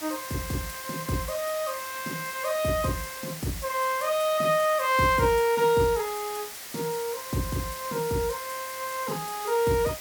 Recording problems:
hiss; slope 0 dB per octave, SNR 10 dB

